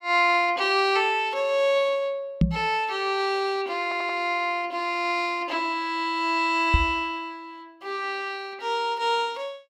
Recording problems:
microphone thump; at 2.5 s and at 6.5 s; peak +8 dB vs average level
audio stuttering; at 4 s

